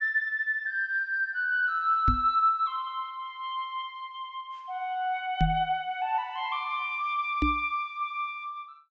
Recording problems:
treble cut off; nothing above 8 kHz
microphone thump; at 2 s, at 5.5 s and at 7.5 s; peak +5 dB vs average level

